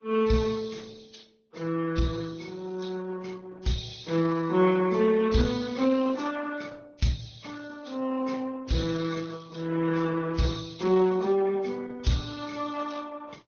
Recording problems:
lossy compression; Vorbis, then Opus, log-spectral distance 5 dB, nothing above 6.2 kHz

